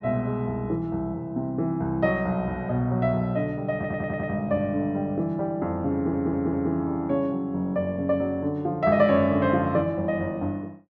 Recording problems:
stutter; at 4 s and at 6 s

